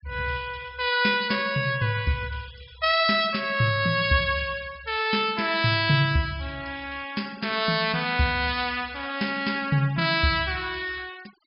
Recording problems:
treble cut off; nothing above 5.5 kHz
denoising artefacts; signal-to-artefact ratio 23 dB

